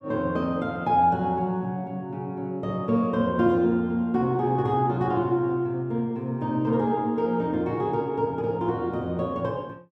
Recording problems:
none

